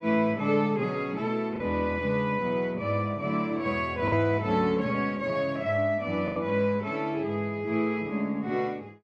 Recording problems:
lost packets; 1.8% of the sound replaced, filled with the last packet

